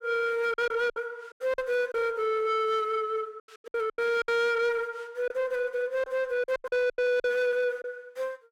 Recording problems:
distortion; soft clipping, signal-to-distortion ratio 10 dB
packet loss; 10% of the sound replaced, filled with silence

